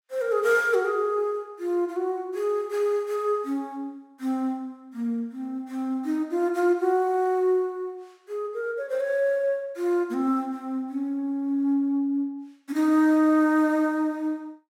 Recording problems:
none

